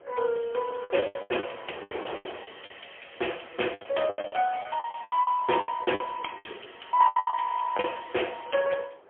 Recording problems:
phone line; 300 Hz to 3.3 kHz, AMR-NB, then MP3
wind noise; below 900 Hz, SNR 16 dB
lost packets; 16% of the sound replaced, filled with the last packet

